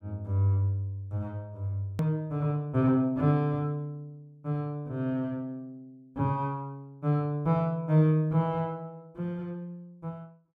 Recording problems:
edit click; at 2 s

